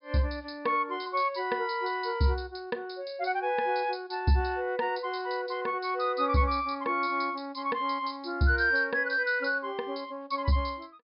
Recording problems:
treble cut off; nothing above 5.5 kHz

